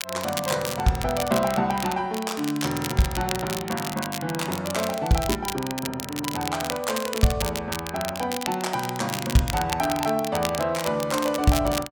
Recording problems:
crackle; vinyl, SNR 7 dB

